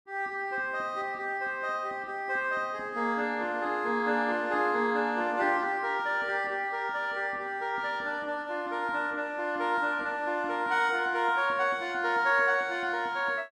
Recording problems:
none

